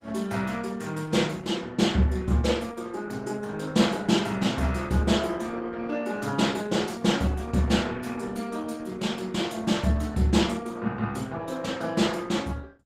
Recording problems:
lossy compression; Opus, log-spectral distance 4 dB, nothing above 18.9 kHz

